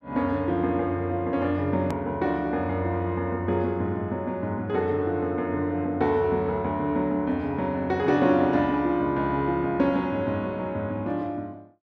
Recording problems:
click at an edit; at 2 s

